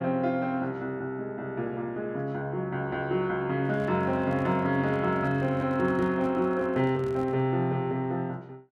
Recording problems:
handling noise; from 3.5 to 7.5 s; peak -8 dB vs average level

